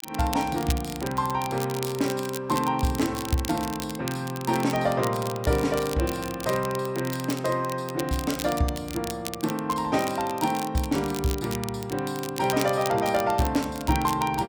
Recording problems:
crackling; vinyl, SNR 11 dB

